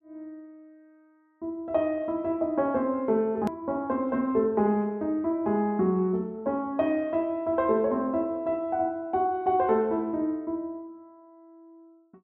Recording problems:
click at an edit; at 3.5 s

